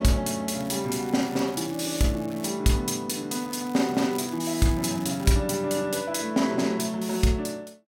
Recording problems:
crackling; from 0.5 to 2.5 s and from 3.5 to 5.5 s; loose cable, SNR 20 dB

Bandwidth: 16.5 kHz